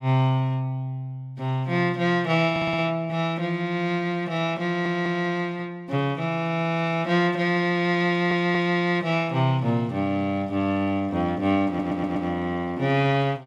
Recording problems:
stutter; 4 times, first at 2.5 s

